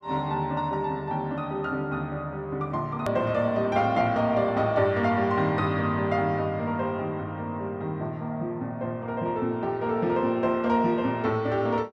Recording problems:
click at an edit; at 3 s

